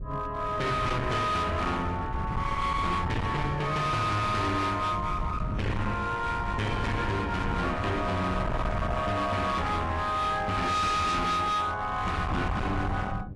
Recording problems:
lossy compression; AAC, log-spectral distance 2 dB, nothing above 11.6 kHz
distortion; hard clipping, signal-to-distortion ratio 7 dB
mains hum; 50 Hz, harmonics up to 700 Hz, SNR 21 dB
wind noise; below 220 Hz, SNR 7 dB

